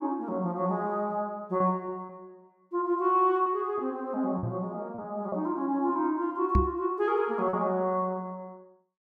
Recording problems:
packet loss; 3% of the sound replaced, filled with repeated pitch periods
microphone bump; at 4.5 s and at 6.5 s; peak +7 dB vs average level

